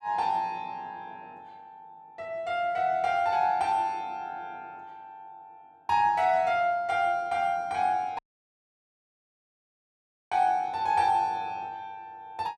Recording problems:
audio cutting out; at 8 s for 2 s

